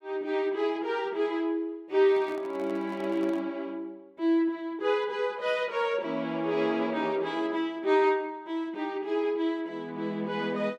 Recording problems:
microphone handling noise; from 2 to 3.5 s; peak -12 dB vs average level

